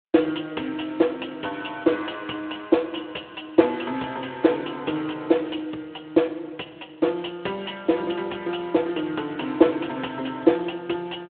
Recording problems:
telephone audio; 260 Hz to 3.6 kHz, Speex

